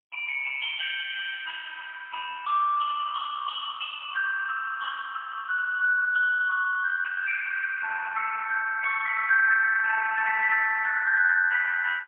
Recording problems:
telephone audio; 990 Hz to 2.2 kHz, AMR-NB, then MP3

